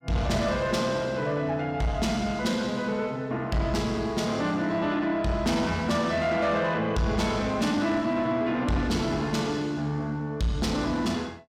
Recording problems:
distortion; soft clipping, signal-to-distortion ratio 12 dB

